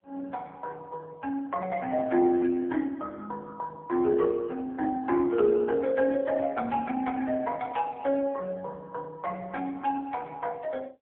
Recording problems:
telephone audio; 240 Hz to 3.5 kHz, AMR-NB

